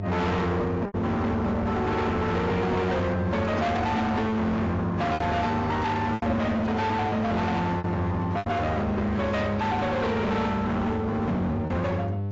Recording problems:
codec artefacts; AAC, log-spectral distance 2 dB, nothing above 7.3 kHz
distorted audio; hard clipping, signal-to-distortion ratio 6 dB
electrical hum; 50 Hz, harmonics up to 900 Hz, SNR 7 dB
lost packets; 4% of the sound replaced, filled with repeated pitch periods

